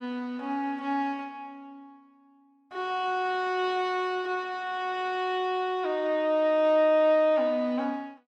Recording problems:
none

